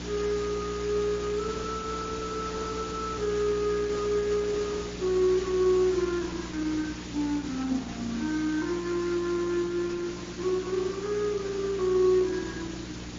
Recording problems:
lossy codec; Opus, then MP3, log-spectral distance 10 dB
hum; 60 Hz, harmonics up to 360 Hz, SNR 11 dB
hiss; slope -2 dB per octave, SNR 13 dB
crackle; at 8 s, at 9 s and at 12 s; loose cable, SNR 27 dB

